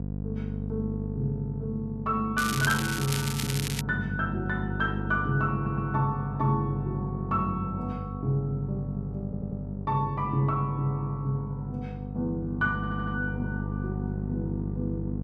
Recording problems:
hum; 50 Hz, harmonics up to 550 Hz, SNR 4 dB
crackling; from 2.5 to 4 s; loose cable, SNR 3 dB
audio stuttering; at 5.5 s, at 9 s and at 13 s

